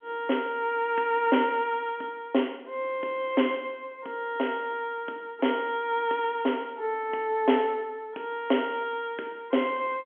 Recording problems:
telephone audio; 220 Hz to 3.4 kHz, G.711

